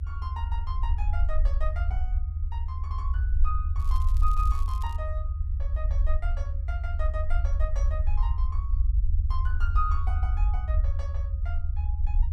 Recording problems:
low-frequency rumble; below 76 Hz, SNR -11 dB
crackling; from 4 to 5 s; loose cable, SNR 15 dB

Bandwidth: 14 kHz